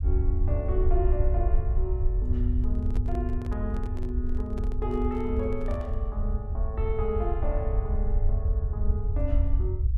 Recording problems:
low-frequency rumble; below 74 Hz, SNR -5 dB
microphone handling noise; from 2.5 to 6 s; peak -2 dB vs average level

